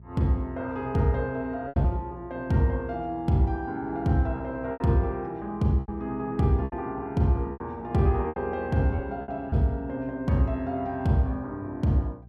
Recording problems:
hum; 60 Hz, harmonics up to 420 Hz, SNR 21 dB
lost packets; 5% of the sound replaced, filled with repeated pitch periods

